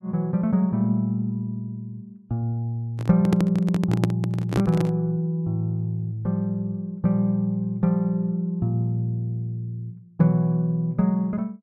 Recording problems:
handling noise; from 3 to 5 s; peak +3 dB vs average level

